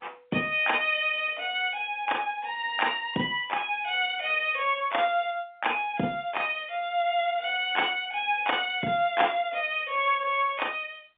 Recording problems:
telephone audio; 220 Hz to 3.6 kHz, G.711

